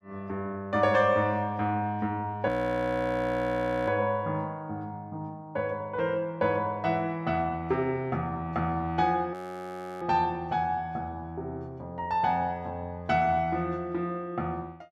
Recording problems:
frozen audio; at 2.5 s for 1.5 s and at 9.5 s for 0.5 s

